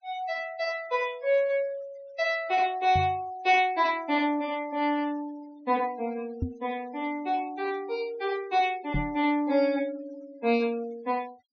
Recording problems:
treble missing; nothing above 6.5 kHz
noise reduction artefacts; signal-to-artefact ratio 24 dB
knock on the microphone; at 3 s, at 6.5 s and at 9 s; peak +2 dB vs average level

